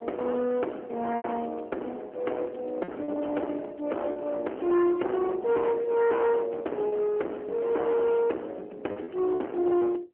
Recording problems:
telephone audio; 260 Hz to 3.4 kHz, AMR-NB
distorted audio; hard clipping, uneven, signal-to-distortion ratio 6 dB
packet loss; 4% of the sound replaced, filled with repeated pitch periods

